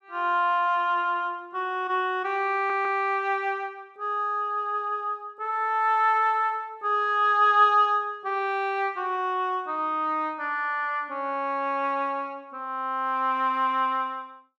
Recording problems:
audio stuttering; at 2.5 s

